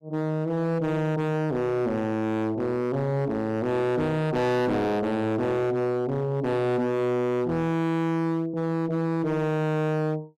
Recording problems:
distortion; hard clipping, signal-to-distortion ratio 6 dB

